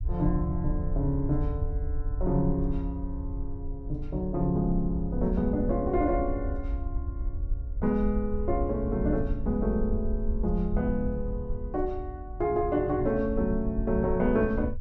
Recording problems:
low-frequency rumble; below 66 Hz, SNR 6 dB

